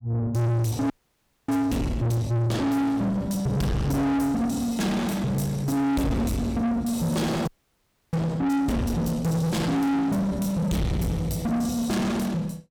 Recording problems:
distortion; soft clipping, signal-to-distortion ratio 6 dB
frozen audio; at 1 s for 0.5 s and at 7.5 s for 0.5 s

